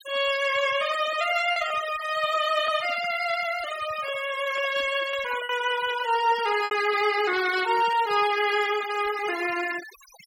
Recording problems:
noise reduction artefacts; signal-to-artefact ratio 13 dB
lost packets; 3% of the sound replaced, filled with repeated pitch periods

